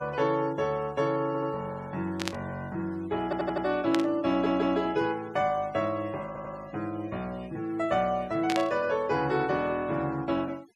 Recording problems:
denoising artefacts; signal-to-artefact ratio 23 dB
audio stuttering; 4 times, first at 1.5 s
static burst; at 2 s, at 4 s and at 8.5 s; peak +2 dB vs average level

